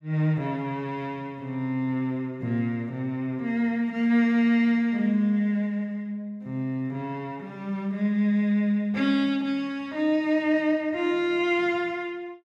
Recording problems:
none

